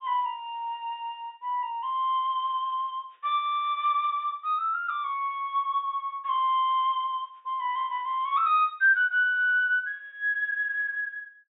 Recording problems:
low-pass filter; nothing above 4 kHz

